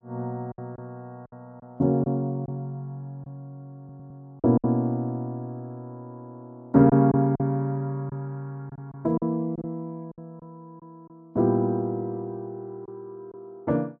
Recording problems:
packet loss; 5% of the sound replaced, filled with silence
stutter; at 4 s

